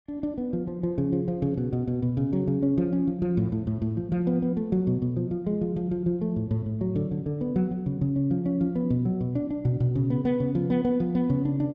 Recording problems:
none

